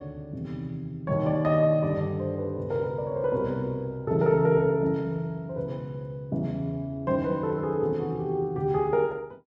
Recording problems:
none

